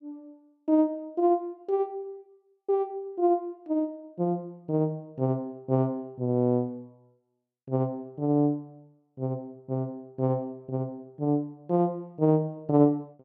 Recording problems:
none

